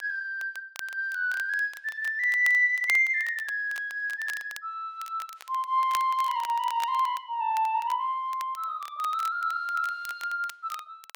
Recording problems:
crackling; vinyl, SNR 18 dB

